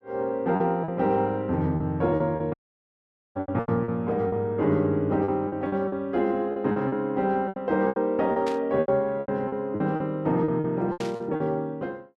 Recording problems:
packet loss; 13% of the sound replaced, filled with repeated pitch periods
audio cutting out; at 2.5 s for 1 s
burst of static; at 3.5 s, at 8.5 s and at 11 s; peak -8 dB vs average level

